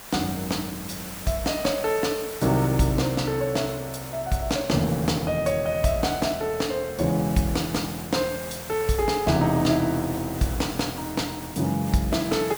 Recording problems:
background hiss; slope -2 dB per octave, SNR 12 dB

